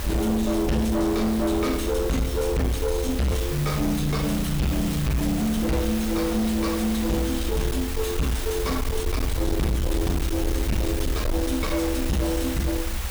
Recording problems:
distortion; soft clipping, signal-to-distortion ratio 7 dB
hiss; slope -3 dB per octave, SNR 9 dB
rumble; below 92 Hz, SNR 5 dB

